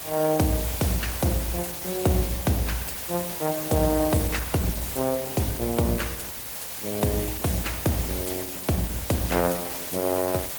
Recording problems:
codec artefacts; Opus, log-spectral distance 9 dB, nothing above 19 kHz
background hiss; slope -1 dB per octave, SNR 5 dB

